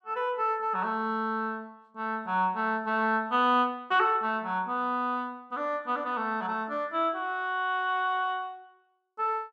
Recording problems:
none

